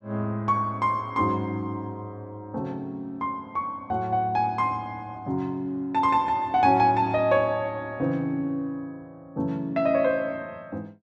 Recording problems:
none

